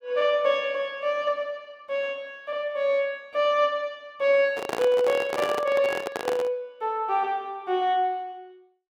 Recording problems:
handling noise; from 4.5 to 6.5 s; peak +1 dB vs average level

